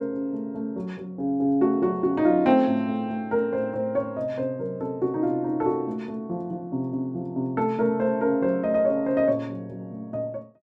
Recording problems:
none

